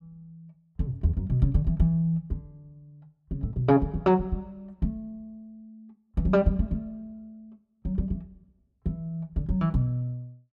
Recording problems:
none

